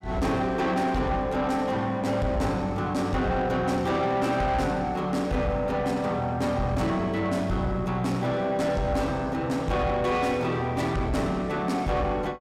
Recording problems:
distortion; soft clipping, signal-to-distortion ratio 11 dB

